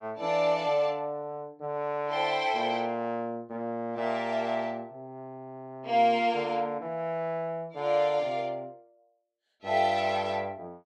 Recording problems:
none

